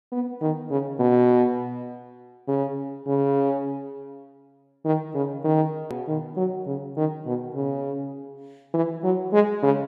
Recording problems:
click at an edit; at 6 s

